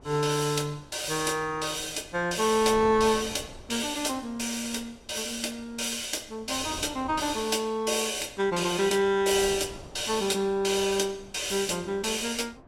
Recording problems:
wind noise; below 570 Hz, SNR 21 dB

